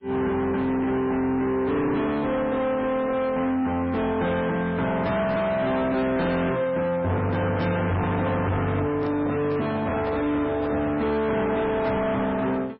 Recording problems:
codec artefacts; MP3, log-spectral distance 2 dB, nothing above 5.3 kHz
distorted audio; soft clipping, signal-to-distortion ratio 7 dB
handling noise; from 9 to 11 s; peak -3 dB vs average level

